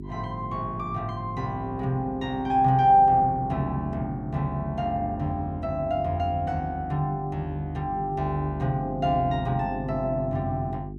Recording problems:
hum; 50 Hz, harmonics up to 400 Hz, SNR 13 dB

